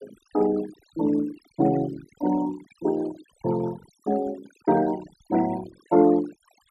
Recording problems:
denoising artefacts; signal-to-artefact ratio 17 dB

